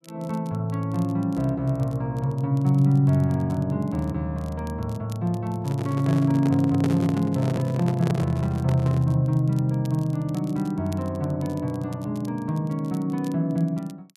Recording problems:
crackling; vinyl, SNR 28 dB
microphone handling noise; from 5.5 to 9 s; peak -2 dB vs average level

